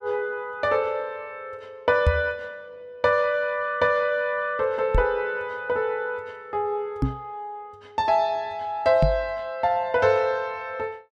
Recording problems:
knock on the microphone; 4 times, first at 2 s; peak +7 dB vs average level

